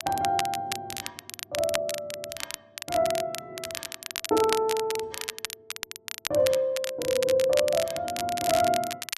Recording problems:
crackling; vinyl, SNR 8 dB

